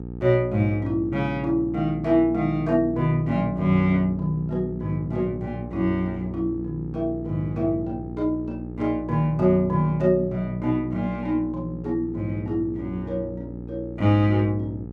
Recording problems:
hum; 60 Hz, harmonics up to 840 Hz, SNR 11 dB

